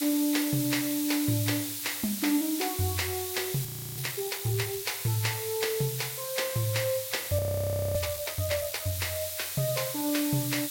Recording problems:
hiss; SNR 3 dB
audio freezing; at 3.5 s and at 7.5 s for 0.5 s

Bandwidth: 16.5 kHz